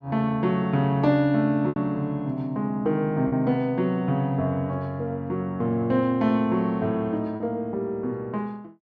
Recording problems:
packet loss; 1.8% of the sound replaced, filled with repeated pitch periods

